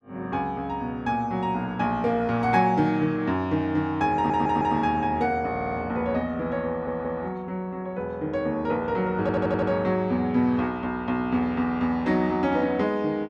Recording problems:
audio stuttering; 4 times, first at 4 s

